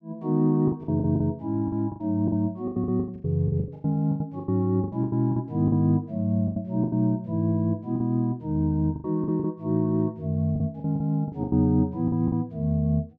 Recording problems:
lost packets; 14% of the sound replaced, filled with the last packet

